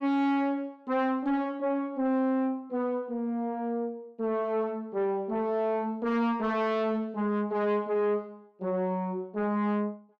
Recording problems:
distortion; soft clipping, signal-to-distortion ratio 11 dB

